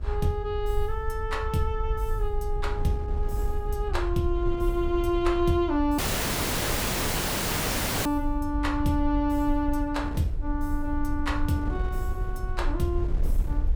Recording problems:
hum; 60 Hz, harmonics up to 1.3 kHz, SNR 26 dB
low-frequency rumble; below 60 Hz, SNR 4 dB
wind on the microphone; below 250 Hz, SNR 14 dB
audio cutting out; at 6 s for 2 s

